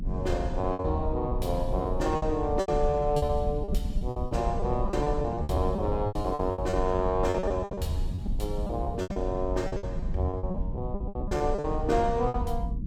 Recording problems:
rumble; below 120 Hz, SNR 4 dB
lost packets; 17% of the sound replaced, filled with repeated pitch periods

